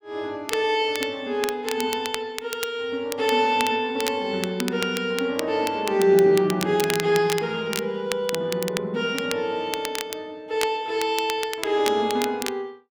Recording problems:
crackle; vinyl, SNR 10 dB

